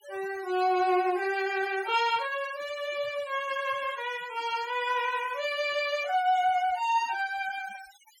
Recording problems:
noise reduction artefacts; signal-to-artefact ratio 18 dB

